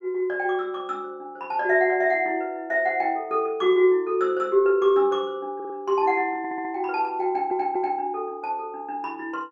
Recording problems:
stutter; at 5.5 s, at 6.5 s and at 7.5 s

